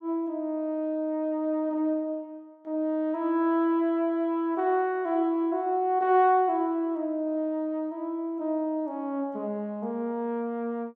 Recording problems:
none

